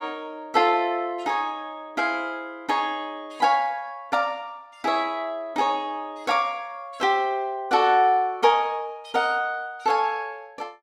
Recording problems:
static burst; at 5.5 s; peak -15 dB vs average level

